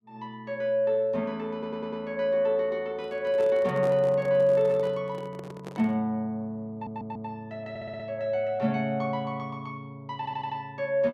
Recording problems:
audio stuttering; 4 times, first at 1.5 s
handling noise; from 3 to 6 s; peak -7 dB vs average level

